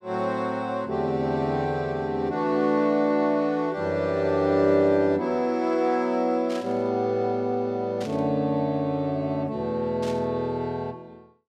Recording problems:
burst of static; at 6.5 s, at 8 s and at 10 s; peak -11 dB vs average level

